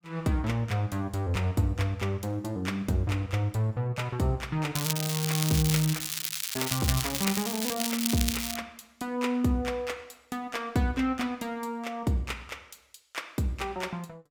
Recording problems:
crackling; from 5 to 8.5 s; loose cable, SNR 1 dB

